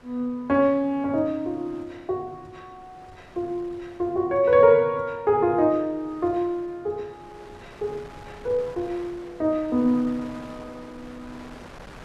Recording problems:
wind on the microphone; below 1.6 kHz, SNR 23 dB

